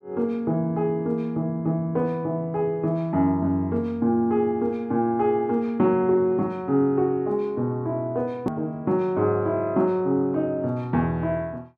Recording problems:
edit click; at 8.5 s

